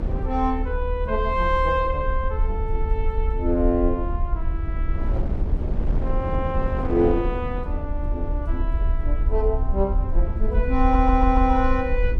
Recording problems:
low-frequency rumble; below 58 Hz, SNR 2 dB
wind noise; below 330 Hz, SNR 10 dB
audio stuttering; at 11 s

